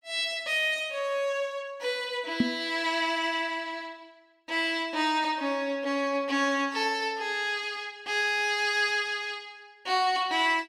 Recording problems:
microphone bump; at 2.5 s; peak +7 dB vs average level

